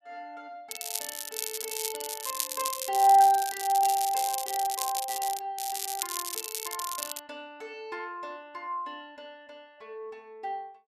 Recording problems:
crackle; from 0.5 to 5.5 s and from 5.5 to 7 s; loose cable, SNR 5 dB

